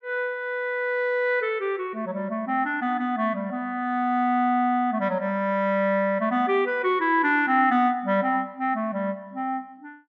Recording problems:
none

